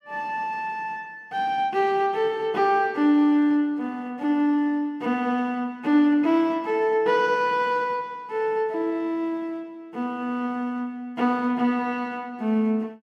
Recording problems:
none

